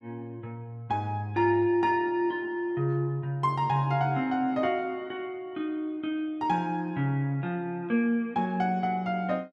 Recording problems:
none

